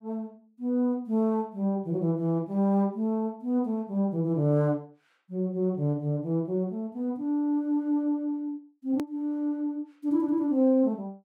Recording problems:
edit click; at 9 s

